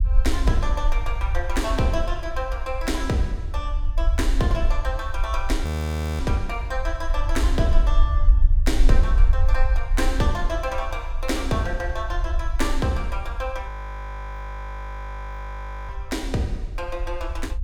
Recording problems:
low-frequency rumble; below 52 Hz, SNR -2 dB
audio freezing; at 5.5 s for 0.5 s and at 14 s for 2 s

